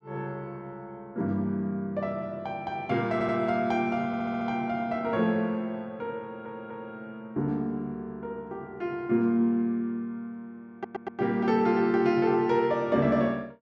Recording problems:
audio stuttering; 4 times, first at 3 s

